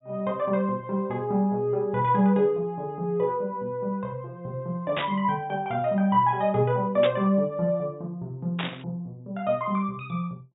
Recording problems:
treble cut off; nothing above 4 kHz
static burst; at 5 s, at 7 s and at 8.5 s; peak 0 dB vs average level

